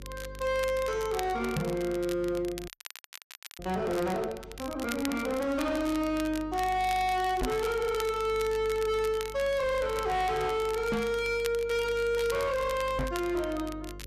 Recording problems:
distortion; hard clipping, signal-to-distortion ratio 8 dB
electrical hum; 50 Hz, harmonics up to 550 Hz, SNR 18 dB
crackle; vinyl, SNR 15 dB
knock on the microphone; 4 times, first at 1.5 s; peak +3 dB vs average level
audio freezing; at 2.5 s for 1 s

